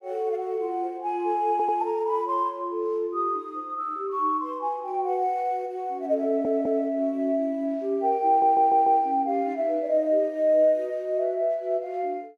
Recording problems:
stutter; at 1.5 s, at 6.5 s and at 8.5 s

